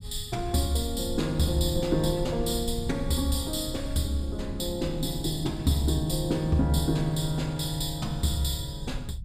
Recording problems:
rumble; below 94 Hz, SNR 11 dB

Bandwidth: 15.5 kHz